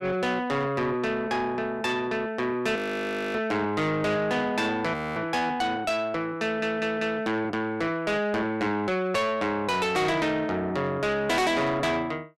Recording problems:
distortion; soft clipping, signal-to-distortion ratio 8 dB
audio freezing; at 3 s for 0.5 s and at 5 s
stutter; at 6.5 s

